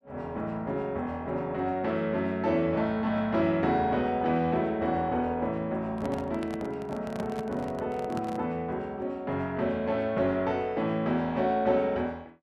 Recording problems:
microphone handling noise; from 6 to 8.5 s; peak -5 dB vs average level

